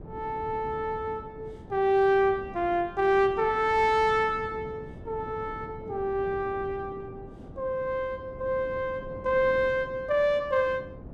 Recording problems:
wind noise; below 360 Hz, SNR 17 dB

